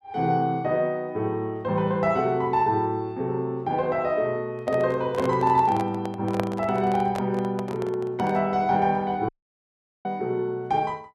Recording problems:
handling noise; from 4.5 to 8.5 s; peak +2 dB vs average level
dropout; at 9.5 s for 1 s

